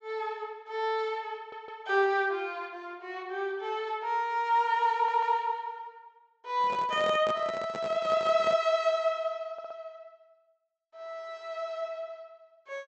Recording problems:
treble missing; nothing above 7.9 kHz
stutter; at 1.5 s, at 5 s and at 9.5 s
handling noise; from 6.5 to 8.5 s; peak -4 dB vs average level

